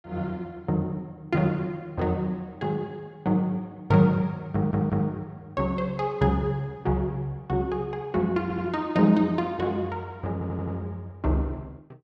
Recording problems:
audio stuttering; at 4.5 s, at 8.5 s and at 10 s

